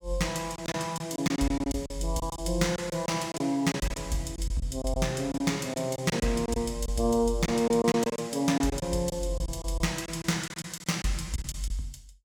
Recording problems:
lost packets; 11% of the sound replaced, filled with silence

